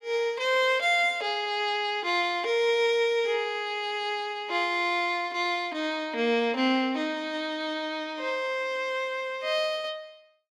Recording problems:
none

